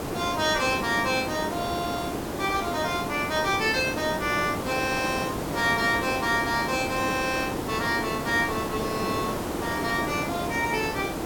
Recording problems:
hiss; slope -7 dB per octave, SNR 4 dB

